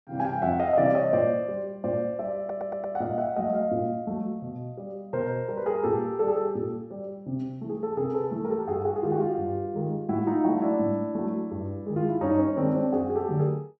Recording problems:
stutter; at 2.5 s

